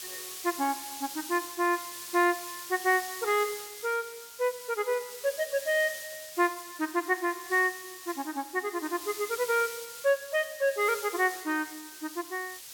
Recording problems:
hiss; slope +3 dB per octave, SNR 10 dB

